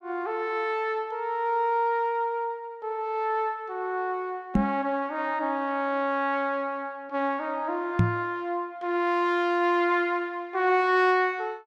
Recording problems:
knock on the microphone; at 4.5 s and at 8 s; peak +8 dB vs average level

